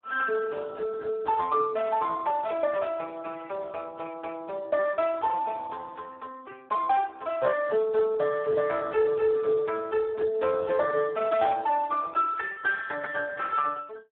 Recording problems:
phone line; 260 Hz to 2.3 kHz, Speex

